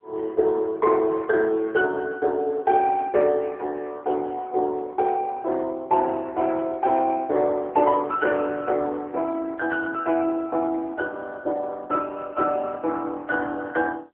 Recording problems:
phone line; 300 Hz to 3 kHz, AMR-NB

